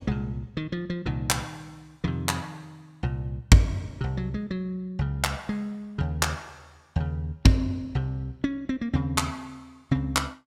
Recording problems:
none

